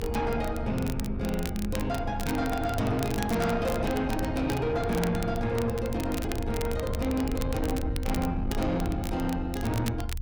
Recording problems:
distortion; soft clipping, signal-to-distortion ratio 11 dB
low-frequency rumble; below 90 Hz, strongest tone 26 Hz, SNR 6 dB
crackling; vinyl, SNR 13 dB

